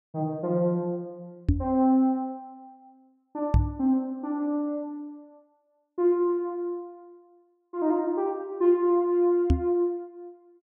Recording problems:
knock on the microphone; at 1.5 s, at 3.5 s and at 9.5 s; peak +8 dB vs average level

